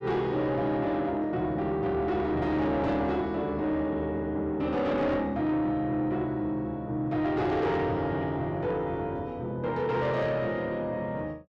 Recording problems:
distortion; soft clipping, signal-to-distortion ratio 11 dB

